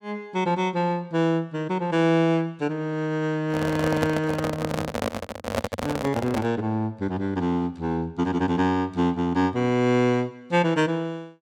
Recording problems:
microphone handling noise; from 3.5 to 6.5 s; peak +3 dB vs average level

